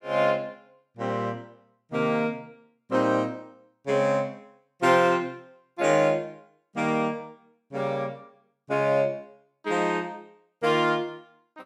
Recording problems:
none

